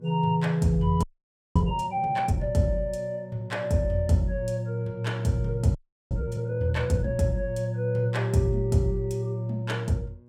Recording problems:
hum; 60 Hz, harmonics up to 960 Hz, SNR 26 dB
frozen audio; at 1 s for 0.5 s and at 6 s

